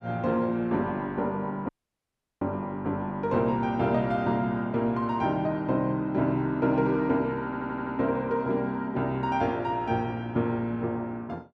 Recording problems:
audio cutting out; at 1.5 s for 0.5 s
stutter; at 7.5 s

